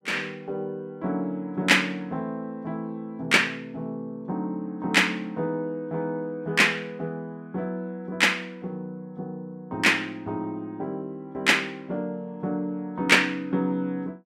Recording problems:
none

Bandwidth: 16 kHz